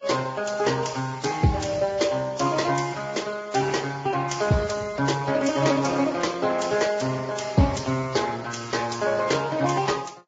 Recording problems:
lossy compression; Speex, then Vorbis, log-spectral distance 6 dB, nothing above 7.3 kHz

